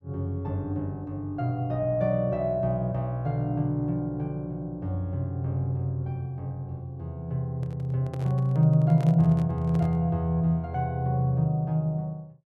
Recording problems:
microphone handling noise; from 7.5 to 10 s; peak -10 dB vs average level

